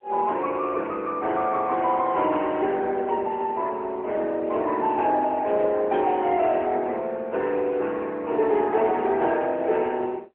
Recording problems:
telephone audio; 300 Hz to 3.1 kHz, AMR-NB

